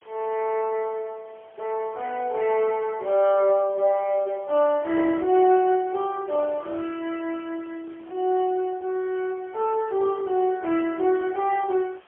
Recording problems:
phone line; 300 Hz to 3.5 kHz, AMR-NB, then MP3
hiss; SNR 29 dB

